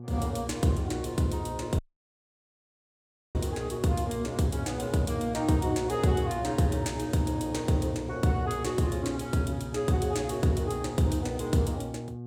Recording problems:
hum; 60 Hz, harmonics up to 840 Hz, SNR 11 dB
audio cutting out; at 2 s for 1.5 s

